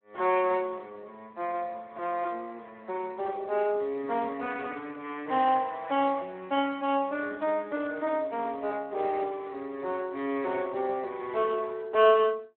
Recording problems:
telephone audio; 300 Hz to 3.4 kHz, Speex

